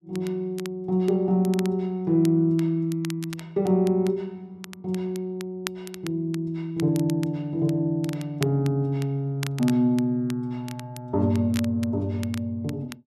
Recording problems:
crackle; vinyl, SNR 18 dB

